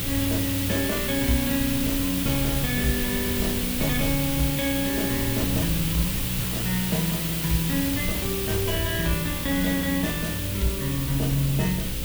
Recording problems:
electrical hum; 60 Hz, harmonics up to 540 Hz, SNR 10 dB
hiss; SNR 1 dB
low-frequency rumble; below 110 Hz, SNR 11 dB

